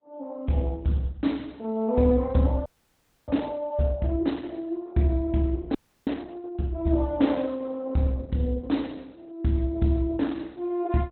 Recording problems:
codec artefacts; Opus, log-spectral distance 3 dB, nothing above 4.1 kHz
frozen audio; at 2.5 s for 0.5 s and at 6 s

